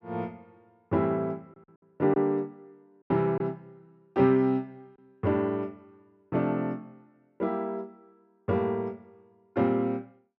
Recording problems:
lost packets; 1.4% of the sound replaced, filled with silence

